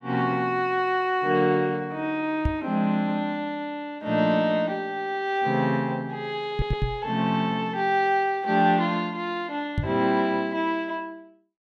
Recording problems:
microphone thump; at 2.5 s, at 6.5 s and at 10 s; peak +3 dB vs average level
audio stuttering; at 6.5 s

